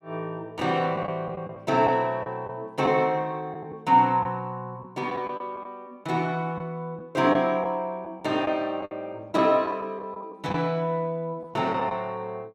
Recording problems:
packet loss; 6% of the sound replaced, filled with the last packet

